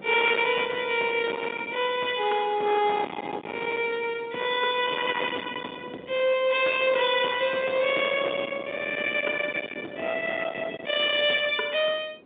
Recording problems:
telephone audio; 240 Hz to 3.7 kHz, G.711
distortion; soft clipping, signal-to-distortion ratio 11 dB
wind noise; below 2.4 kHz, SNR 11 dB

